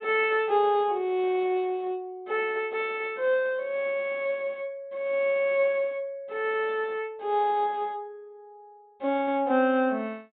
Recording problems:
low-pass filter; nothing above 4 kHz

